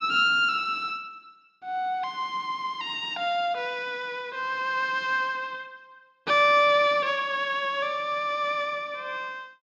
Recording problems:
none

